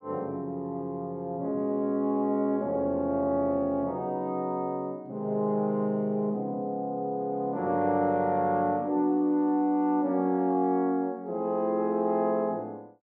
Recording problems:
none

